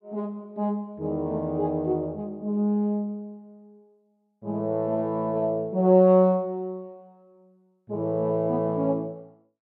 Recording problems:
none

